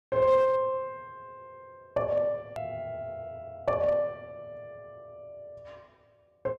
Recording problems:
distorted audio; hard clipping, uneven, signal-to-distortion ratio 10 dB
edit click; at 2.5 s

